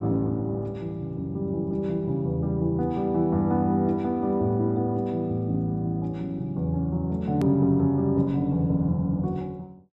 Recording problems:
edit click; at 7.5 s

